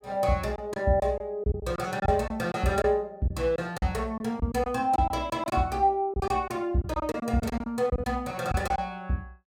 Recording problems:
lost packets; 10% of the sound replaced, filled with silence

